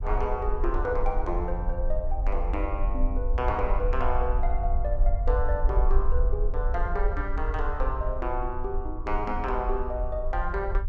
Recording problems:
low-frequency rumble; below 50 Hz, SNR -1 dB

